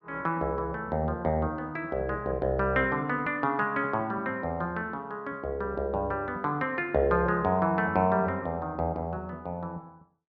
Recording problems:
none

